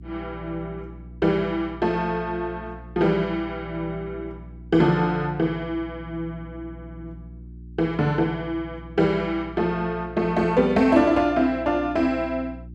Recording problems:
hum; 60 Hz, harmonics up to 360 Hz, SNR 18 dB

